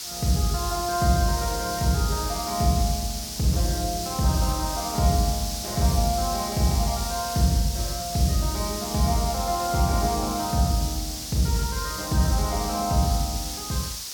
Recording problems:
background hiss; SNR 6 dB

